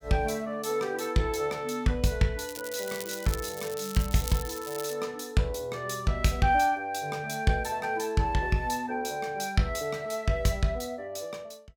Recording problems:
crackle; from 2.5 to 5 s; loose cable, SNR 10 dB

